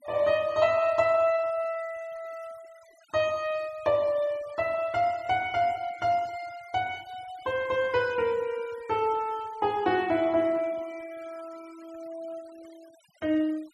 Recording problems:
denoising artefacts; signal-to-artefact ratio 25 dB

